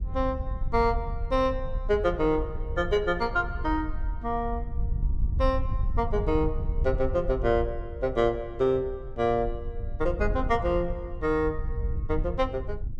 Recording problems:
wind noise; below 72 Hz, SNR 6 dB

